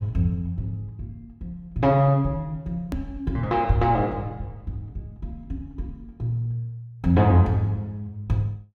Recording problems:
hard cut with a click; at 3 s

